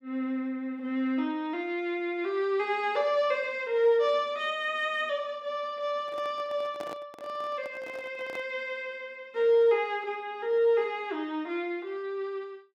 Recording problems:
microphone handling noise; from 6 to 8.5 s; peak -7 dB vs average level

